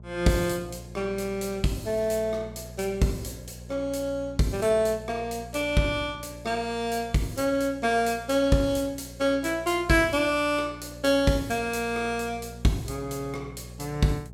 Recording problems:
electrical hum; 60 Hz, harmonics up to 660 Hz, SNR 17 dB

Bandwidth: 16.5 kHz